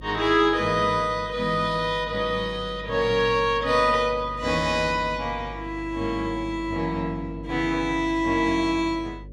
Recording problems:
electrical hum; 50 Hz, harmonics up to 550 Hz, SNR 16 dB

